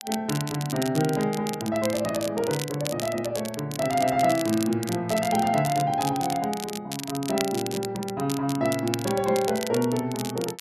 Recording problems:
crackle; vinyl, SNR 10 dB

